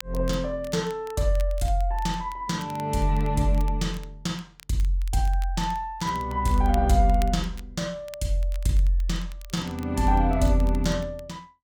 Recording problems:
crackle; vinyl, SNR 23 dB

